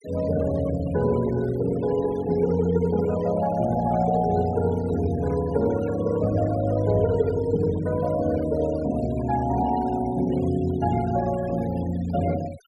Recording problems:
denoising artefacts; signal-to-artefact ratio 19 dB

